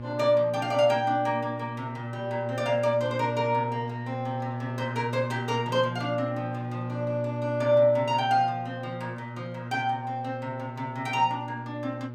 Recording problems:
hum; 60 Hz, harmonics up to 1.2 kHz, SNR 8 dB

